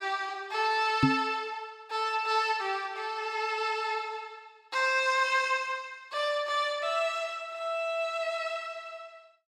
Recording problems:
microphone thump; at 1 s; peak +9 dB vs average level

